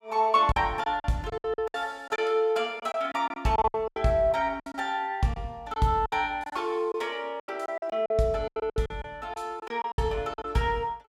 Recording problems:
packet loss; 13% of the sound replaced, filled with silence

